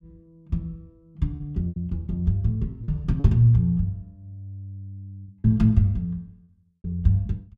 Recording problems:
lost packets; 5% of the sound replaced, filled with repeated pitch periods

